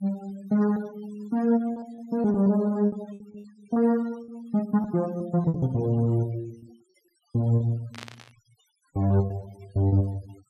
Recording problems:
denoising artefacts; signal-to-artefact ratio 25 dB
packet loss; 9% of the sound replaced, filled with repeated pitch periods
burst of static; at 8 s; peak -9 dB vs average level

